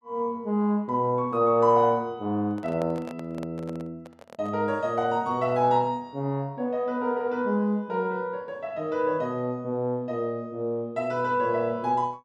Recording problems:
microphone handling noise; from 2.5 to 4.5 s; peak -8 dB vs average level

